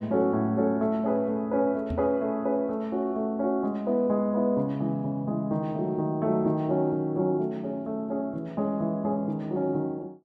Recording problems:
microphone bump; at 2 s; peak -1 dB vs average level

